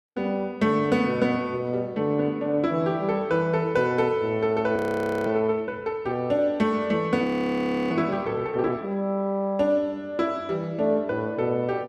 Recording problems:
audio freezing; at 5 s for 0.5 s and at 7 s for 0.5 s

